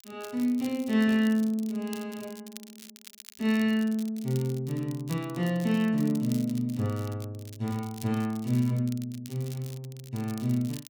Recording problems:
crackle; vinyl, SNR 19 dB

